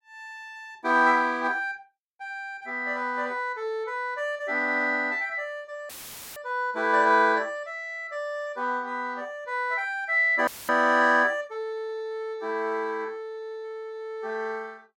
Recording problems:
dropout; at 6 s and at 10 s; filled with static

